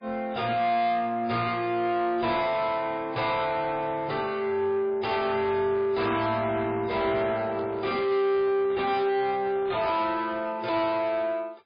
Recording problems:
lossy codec; MP3, log-spectral distance 3 dB, nothing above 4.8 kHz
distorted audio; soft clipping, signal-to-distortion ratio 11 dB
handling noise; from 7 to 10 s; peak -8 dB vs average level

